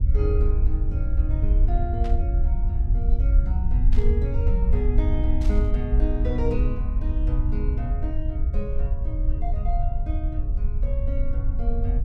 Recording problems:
rumble; below 62 Hz, SNR -8 dB
static burst; at 2 s, at 4 s and at 5.5 s; peak -7 dB vs average level

